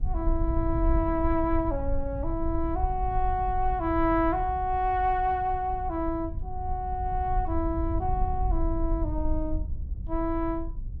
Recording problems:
wind on the microphone; below 66 Hz, SNR 4 dB

